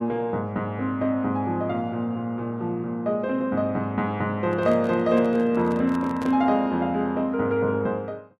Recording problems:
microphone handling noise; from 4.5 to 6.5 s; peak -6 dB vs average level

